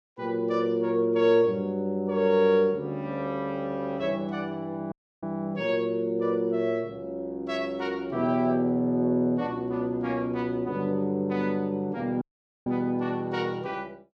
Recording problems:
audio cutting out; at 5 s and at 12 s

